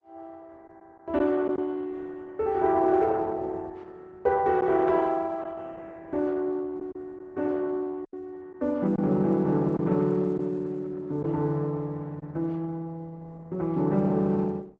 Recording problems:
codec artefacts; Opus, log-spectral distance 2 dB
lost packets; 2% of the sound replaced, filled with silence

